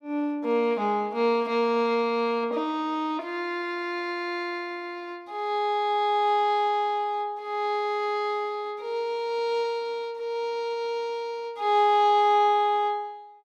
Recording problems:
none

